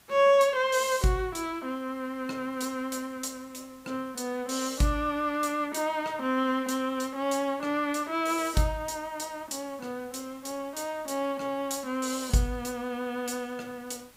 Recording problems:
hiss; slope -1 dB per octave, SNR 25 dB

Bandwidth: 15.5 kHz